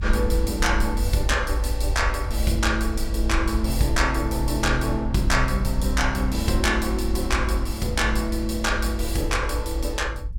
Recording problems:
low-frequency rumble; below 56 Hz, strongest tone 54 Hz, SNR 3 dB

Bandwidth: 17 kHz